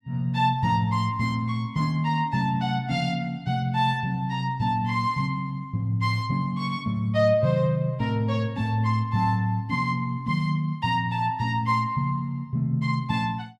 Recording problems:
none

